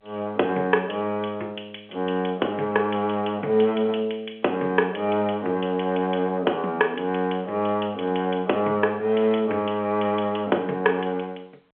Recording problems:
telephone audio; 240 Hz to 3.4 kHz, G.711

